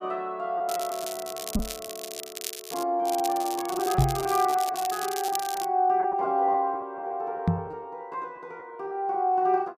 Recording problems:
lost packets; 9% of the sound replaced, filled with repeated pitch periods
crackle; from 0.5 to 3 s and from 3 to 5.5 s; loose cable, SNR 9 dB
microphone thump; at 1.5 s, at 4 s and at 7.5 s; peak +8 dB vs average level

